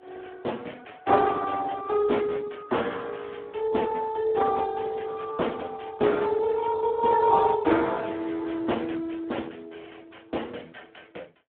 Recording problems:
phone line; 260 Hz to 3.4 kHz, Speex

